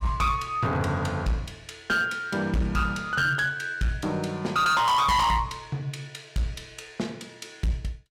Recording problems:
distorted audio; hard clipping, uneven, signal-to-distortion ratio 6 dB

